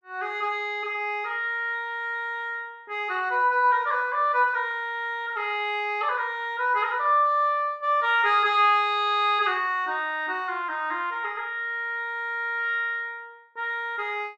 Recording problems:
none

